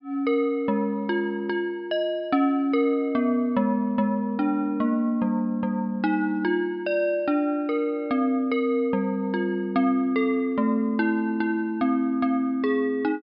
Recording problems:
treble cut off; nothing above 5.5 kHz

